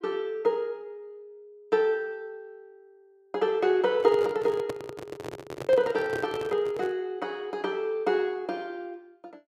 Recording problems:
handling noise; from 4 to 7 s; peak -2 dB vs average level

